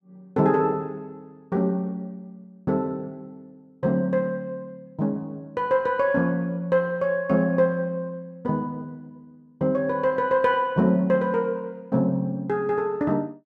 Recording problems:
none

